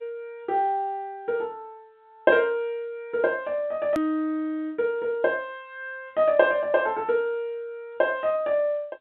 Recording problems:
telephone audio; 150 Hz to 3.7 kHz, G.711
hard cut with a click; at 4 s

